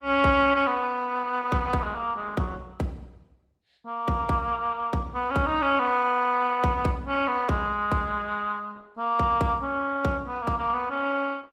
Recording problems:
lossy codec; Opus, log-spectral distance 3 dB, nothing above 17.1 kHz

